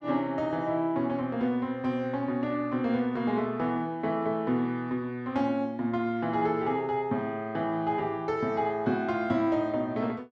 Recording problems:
none

